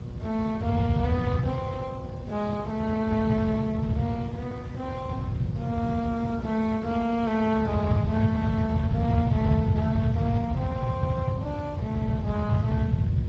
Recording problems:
codec artefacts; Speex, log-spectral distance 2 dB
hum; 60 Hz, harmonics up to 1.6 kHz, SNR 15 dB
background hiss; slope -4 dB per octave, SNR 27 dB
rumble; below 150 Hz, SNR 0 dB
wind on the microphone; below 380 Hz, SNR 18 dB

